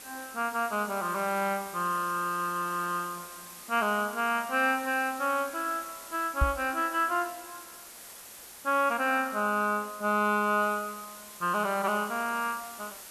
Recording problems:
background hiss; slope -1 dB per octave, SNR 15 dB
microphone bump; at 6.5 s; peak +6 dB vs average level

